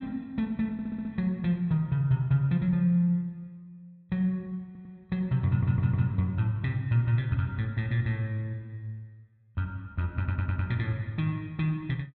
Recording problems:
stutter; 4 times, first at 0.5 s

